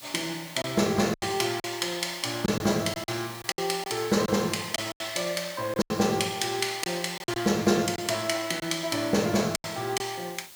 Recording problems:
background hiss; slope +1 dB per octave, SNR 17 dB
packet loss; 8% of the sound replaced, filled with silence

